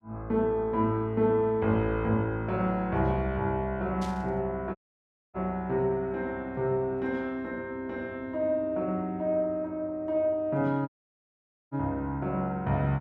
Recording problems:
burst of static; at 4 s; peak -11 dB vs average level
audio cutting out; at 5 s for 0.5 s and at 11 s for 1 s

